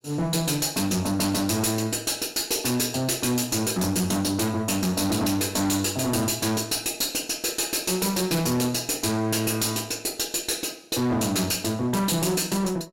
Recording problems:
distorted audio; hard clipping, uneven, signal-to-distortion ratio 6 dB

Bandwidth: 16 kHz